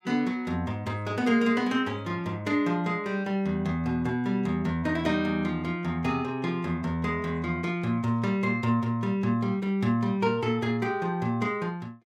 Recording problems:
none

